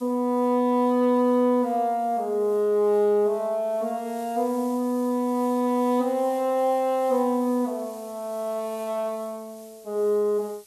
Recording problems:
background hiss; SNR 25 dB

